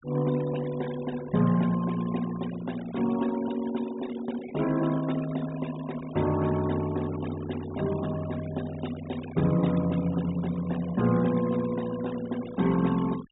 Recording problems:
low-pass filter; nothing above 4 kHz
denoising artefacts; signal-to-artefact ratio 16 dB

